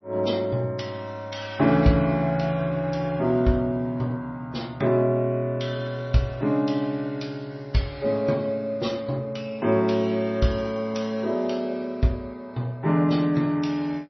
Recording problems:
lossy compression; MP3, log-spectral distance 2 dB, nothing above 5.8 kHz

